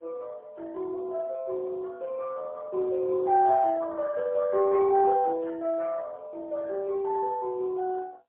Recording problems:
phone line; 340 Hz to 2.2 kHz, AMR-NB, then MP3

